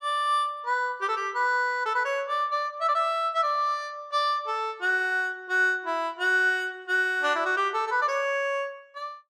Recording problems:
none

